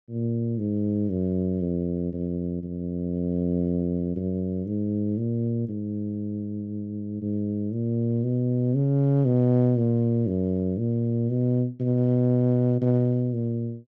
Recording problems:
none

